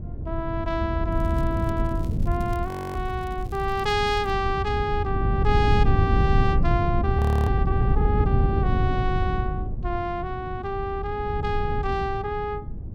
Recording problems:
wind on the microphone; below 120 Hz, SNR -1 dB
crackling; from 1 to 4.5 s; loose cable, SNR 25 dB
audio freezing; at 2.5 s and at 7 s

